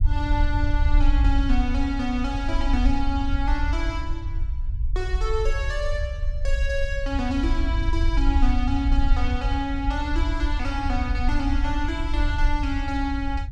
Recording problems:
rumble; below 60 Hz, SNR -2 dB

